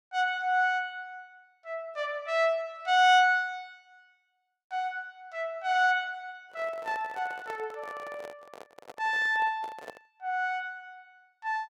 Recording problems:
handling noise; from 6.5 to 10 s; peak -9 dB vs average level

